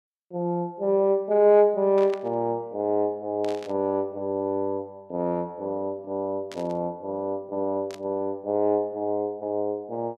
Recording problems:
burst of static; 4 times, first at 2 s; peak -10 dB vs average level

